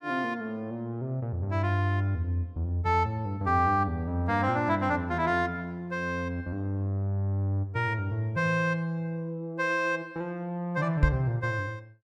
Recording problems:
microphone thump; at 11 s; peak +9 dB vs average level

